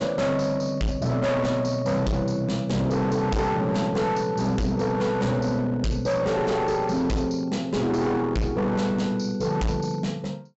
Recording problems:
treble missing; nothing above 7.7 kHz
distorted audio; hard clipping, signal-to-distortion ratio 7 dB

